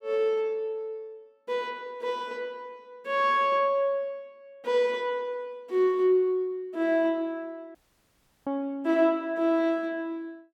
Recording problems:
dropout; at 8 s for 0.5 s

